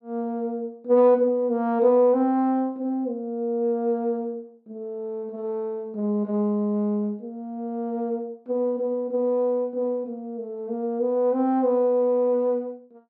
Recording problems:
none

